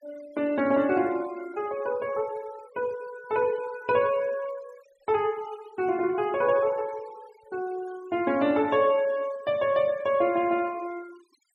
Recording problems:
denoising artefacts; signal-to-artefact ratio 22 dB

